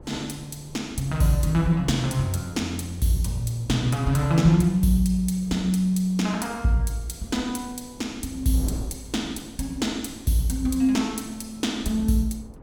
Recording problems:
wind on the microphone; below 340 Hz, SNR 20 dB

